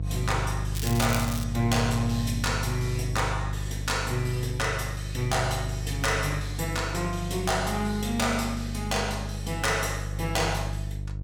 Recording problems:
distorted audio; hard clipping, uneven, signal-to-distortion ratio 11 dB
hum; 50 Hz, harmonics up to 350 Hz, SNR 4 dB
crackling; at 1 s; loose cable, SNR 8 dB

